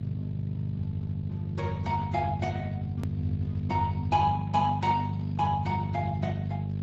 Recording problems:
lossy compression; AAC, then Speex, log-spectral distance 2 dB, nothing above 7.3 kHz
hum; 50 Hz, harmonics up to 450 Hz, SNR 2 dB
click at an edit; at 3 s

